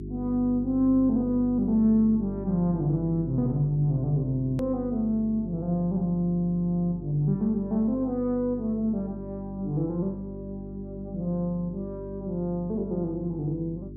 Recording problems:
hum; 50 Hz, harmonics up to 400 Hz, SNR 12 dB
click at an edit; at 4.5 s

